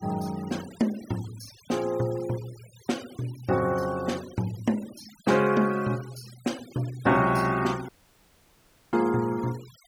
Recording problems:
noise reduction artefacts; signal-to-artefact ratio 19 dB
dropout; at 8 s for 1 s

